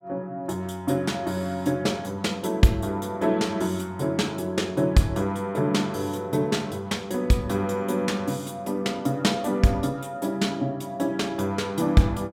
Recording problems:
none

